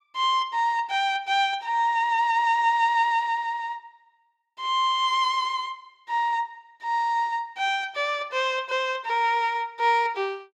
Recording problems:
none

